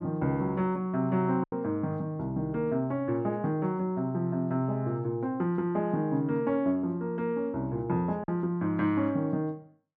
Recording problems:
packet loss; 1.2% of the sound replaced, filled with silence

